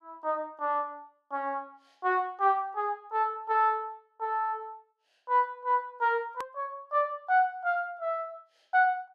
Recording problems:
hard cut with a click; at 6.5 s

